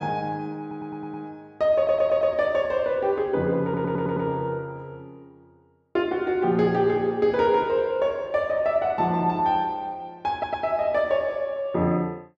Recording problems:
audio stuttering; 4 times, first at 0.5 s

